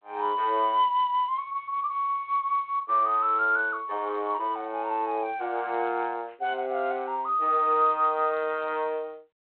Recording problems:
phone line; 300 Hz to 3.3 kHz, G.726

